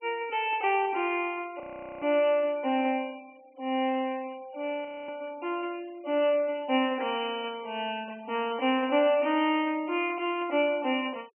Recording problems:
treble cut off; nothing above 3.1 kHz
noise reduction artefacts; signal-to-artefact ratio 26 dB
frozen audio; at 1.5 s and at 5 s

